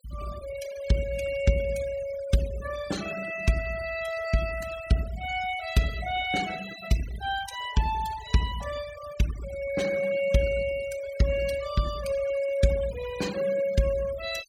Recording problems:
noise reduction artefacts; signal-to-artefact ratio 13 dB

